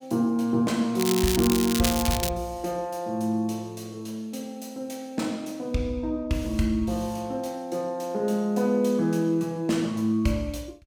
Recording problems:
crackle; from 1 to 2.5 s; loose cable, SNR 2 dB

